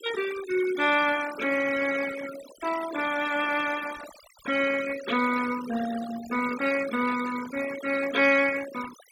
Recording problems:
denoising artefacts; signal-to-artefact ratio 11 dB

